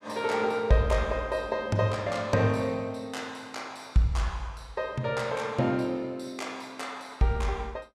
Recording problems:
none

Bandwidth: 15 kHz